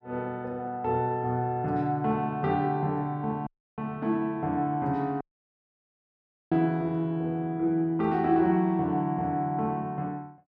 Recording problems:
audio cutting out; at 3.5 s and at 5 s for 1.5 s

